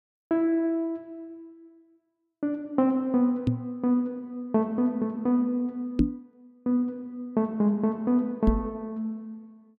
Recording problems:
microphone bump; at 3.5 s, at 6 s and at 8.5 s; peak +9 dB vs average level

